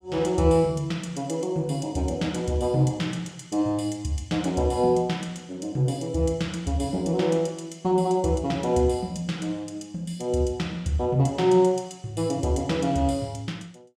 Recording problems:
none

